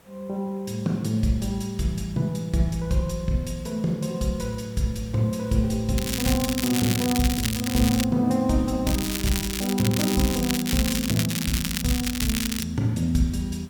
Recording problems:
hiss; slope -5 dB per octave, SNR 27 dB
crackling; from 6 to 8 s and from 9 to 13 s; loose cable, SNR 4 dB

